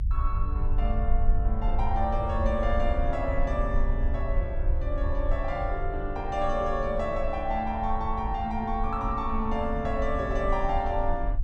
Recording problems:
rumble; below 58 Hz, strongest tone 22 Hz, SNR 2 dB

